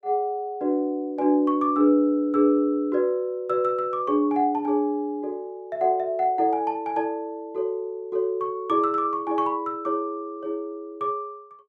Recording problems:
none

